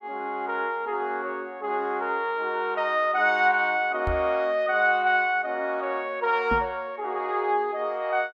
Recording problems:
knock on the microphone; at 4 s and at 6.5 s; peak -2 dB vs average level

